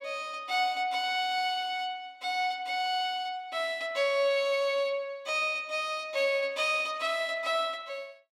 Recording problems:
none

